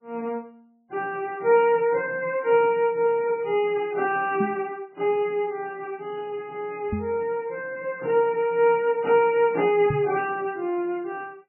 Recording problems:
codec artefacts; MP3, log-spectral distance 2 dB, nothing above 2.7 kHz
microphone bump; at 4.5 s, at 7 s and at 10 s; peak 0 dB vs average level

